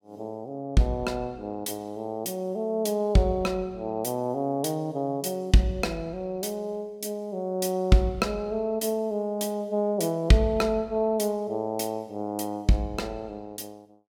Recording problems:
none

